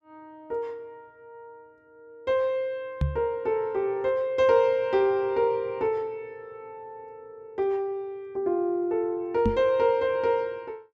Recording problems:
microphone thump; at 3 s and at 9.5 s; peak +4 dB vs average level

